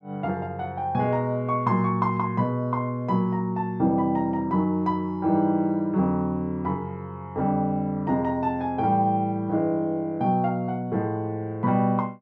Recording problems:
none

